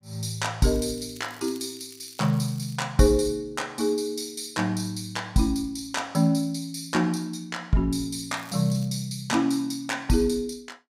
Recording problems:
crackle; from 0.5 to 3 s and at 8.5 s; loose cable, SNR 23 dB

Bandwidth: 15.5 kHz